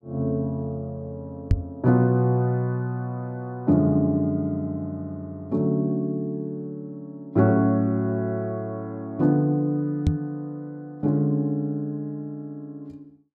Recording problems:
microphone bump; at 1.5 s and at 10 s; peak +8 dB vs average level

